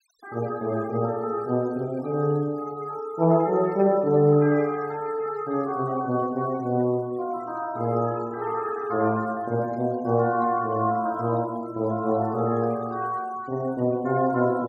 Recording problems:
noise reduction artefacts; signal-to-artefact ratio 26 dB

